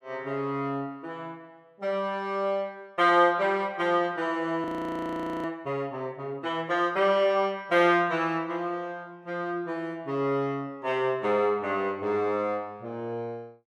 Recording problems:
frozen audio; at 4.5 s for 1 s

